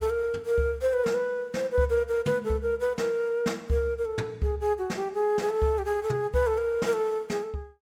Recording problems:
none

